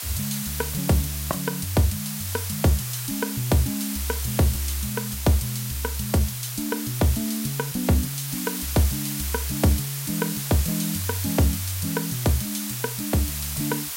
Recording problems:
background hiss; slope +3 dB per octave, SNR 4 dB

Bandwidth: 16 kHz